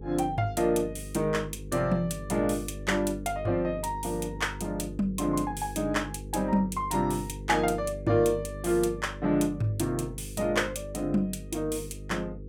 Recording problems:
hum; 50 Hz, harmonics up to 500 Hz, SNR 12 dB

